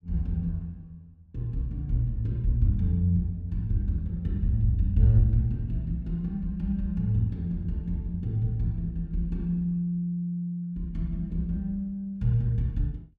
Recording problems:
none

